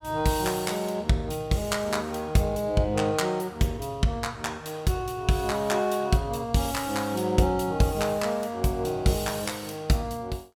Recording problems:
none

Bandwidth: 18 kHz